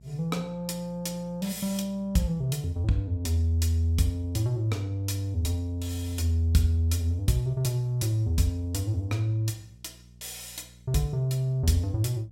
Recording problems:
hum; 60 Hz, harmonics up to 420 Hz, SNR 25 dB

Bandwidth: 16.5 kHz